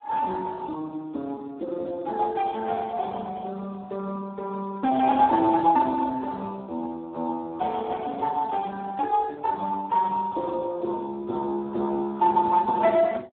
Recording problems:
telephone audio; 220 Hz to 2 kHz, Speex

